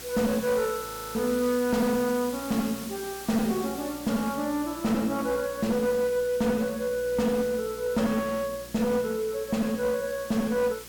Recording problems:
distortion; hard clipping, uneven, signal-to-distortion ratio 11 dB
electrical hum; 60 Hz, harmonics up to 540 Hz, SNR 23 dB
background hiss; slope 0 dB per octave, SNR 14 dB
audio freezing; at 1 s

